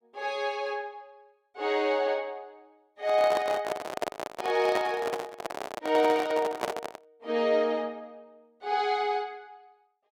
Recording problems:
microphone handling noise; from 3 to 7 s; peak +3 dB vs average level

